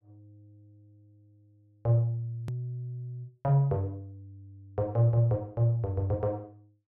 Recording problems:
hard cut with a click; at 2.5 s

